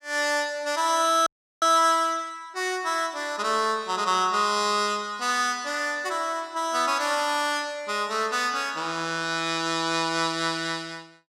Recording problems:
audio freezing; at 1.5 s

